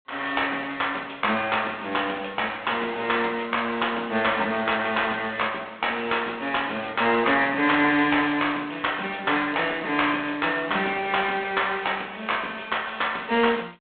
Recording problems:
telephone audio; 220 Hz to 3.6 kHz, G.726

